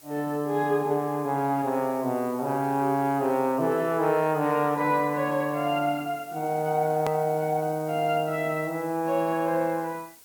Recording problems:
background hiss; slope -1 dB per octave, SNR 22 dB
hard cut with a click; at 7 s

